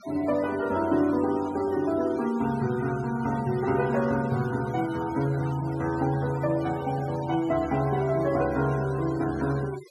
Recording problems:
noise reduction artefacts; signal-to-artefact ratio 16 dB

